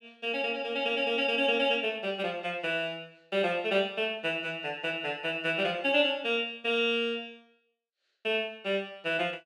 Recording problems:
none

